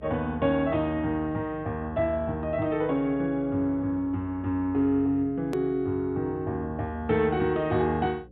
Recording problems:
treble missing; nothing above 4 kHz
hum; 60 Hz, harmonics up to 540 Hz, SNR 22 dB
hard cut with a click; at 5.5 s

